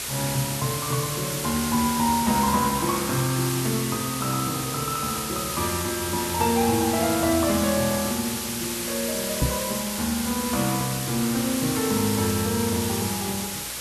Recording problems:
electrical hum; 60 Hz, harmonics up to 600 Hz, SNR 24 dB
background hiss; slope +1 dB per octave, SNR 3 dB
crackle; from 4 to 6.5 s and from 10 to 11 s; loose cable, SNR 28 dB
microphone thump; at 9.5 s; peak +5 dB vs average level

